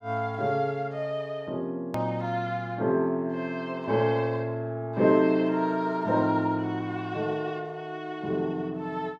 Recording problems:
hard cut with a click; at 2 s

